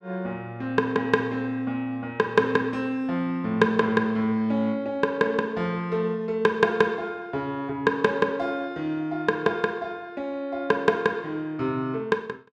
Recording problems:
none

